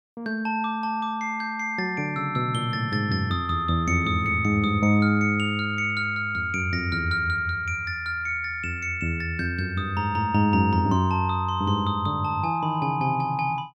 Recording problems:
none

